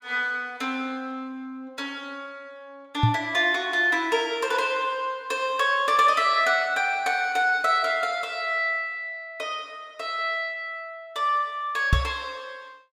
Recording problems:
microphone bump; at 3 s and at 12 s; peak +7 dB vs average level

